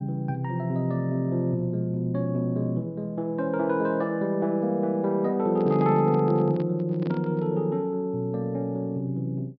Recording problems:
treble cut off; nothing above 5.5 kHz
handling noise; from 5.5 to 7.5 s; peak -6 dB vs average level

